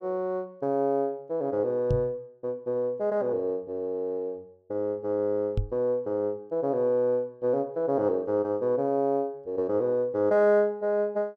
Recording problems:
microphone bump; at 2 s and at 5.5 s; peak +3 dB vs average level

